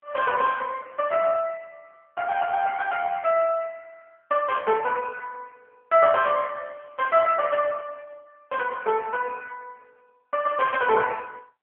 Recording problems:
phone line; 190 Hz to 2.6 kHz, AMR-NB

